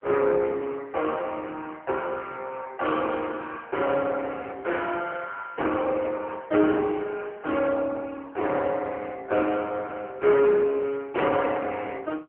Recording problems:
phone line; 280 Hz to 3.2 kHz, AMR-NB

